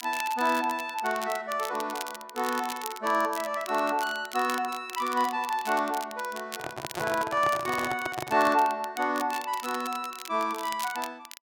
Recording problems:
crackle; vinyl, SNR 13 dB
handling noise; from 6.5 to 8.5 s; peak -1 dB vs average level

